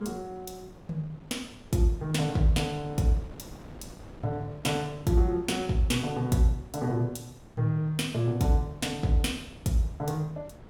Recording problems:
wind noise; below 460 Hz, SNR 20 dB

